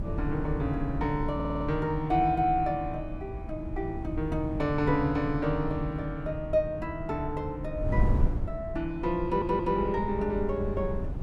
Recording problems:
wind noise; below 120 Hz, SNR 6 dB
stutter; at 1.5 s and at 9.5 s

